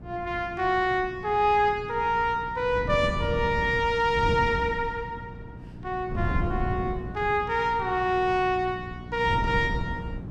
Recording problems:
hum; 60 Hz, harmonics up to 480 Hz, SNR 18 dB
wind noise; below 200 Hz, SNR 10 dB

